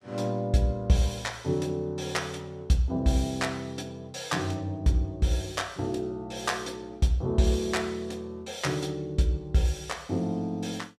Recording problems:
none

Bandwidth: 13.5 kHz